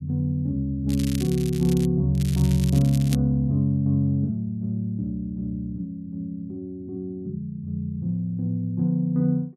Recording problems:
crackling; at 1 s and from 2 to 3 s; loose cable, SNR 15 dB

